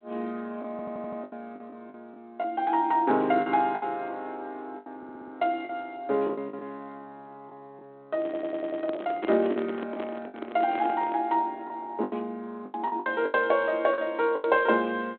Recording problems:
telephone audio; 240 Hz to 3.8 kHz, G.726
packet loss; 9% of the sound replaced, filled with the last packet
audio stuttering; at 0.5 s, at 5 s and at 8 s
microphone handling noise; from 8 to 11 s; peak -2 dB vs average level

